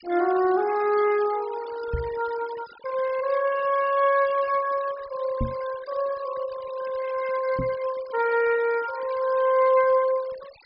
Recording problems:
treble missing; nothing above 5.5 kHz
denoising artefacts; signal-to-artefact ratio 18 dB
microphone thump; at 2 s, at 5.5 s and at 7.5 s; peak 0 dB vs average level

